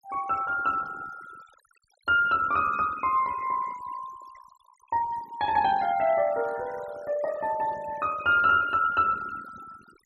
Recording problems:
denoising artefacts; signal-to-artefact ratio 20 dB

